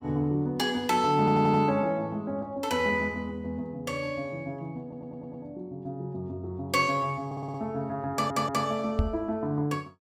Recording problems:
audio stuttering; 4 times, first at 1 s
microphone thump; at 9 s; peak +5 dB vs average level

